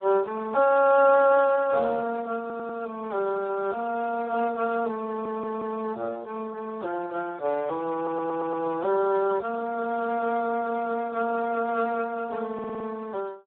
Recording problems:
telephone audio; 300 Hz to 2.1 kHz, Speex
audio stuttering; 4 times, first at 2.5 s

